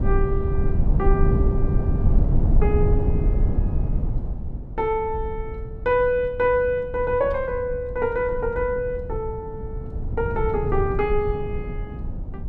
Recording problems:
rumble; below 110 Hz, SNR 1 dB

